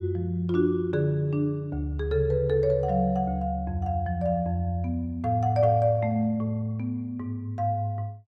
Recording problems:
none

